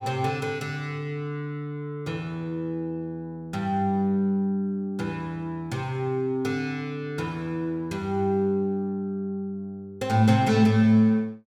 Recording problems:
none

